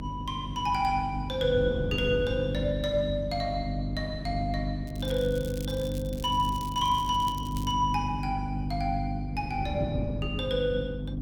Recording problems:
hum; 50 Hz, harmonics up to 300 Hz, SNR 4 dB
wind noise; below 260 Hz, SNR 10 dB
crackling; from 5 to 7.5 s; loose cable, SNR 17 dB

